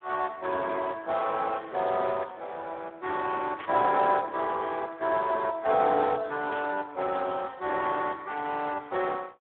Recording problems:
phone line; 300 Hz to 2.6 kHz, Speex
burst of static; at 3.5 s and at 6.5 s; peak -10 dB vs average level

